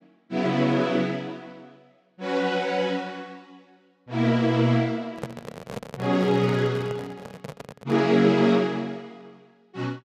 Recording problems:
handling noise; from 5 to 8 s; peak -4 dB vs average level

